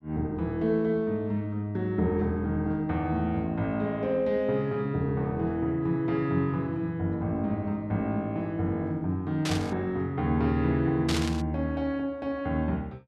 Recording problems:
burst of static; at 9.5 s and at 11 s; peak 0 dB vs average level

